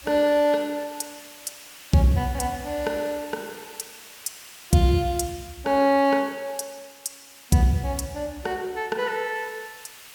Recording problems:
hiss; SNR 19 dB

